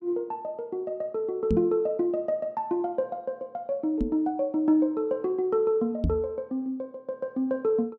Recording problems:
knock on the microphone; at 1.5 s, at 4 s and at 6 s; peak +5 dB vs average level

